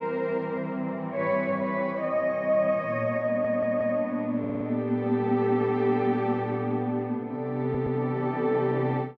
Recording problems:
audio stuttering; at 3.5 s, at 4.5 s and at 7.5 s

